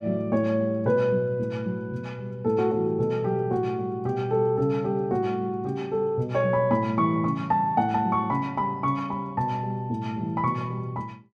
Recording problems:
none

